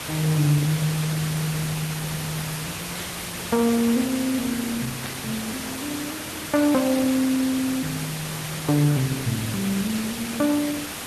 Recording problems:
lossy codec; Opus, log-spectral distance 8 dB
background hiss; slope -2 dB per octave, SNR 6 dB
static burst; at 1 s, at 3 s and at 5 s; peak -7 dB vs average level

